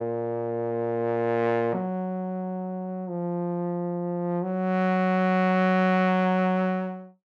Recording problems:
none

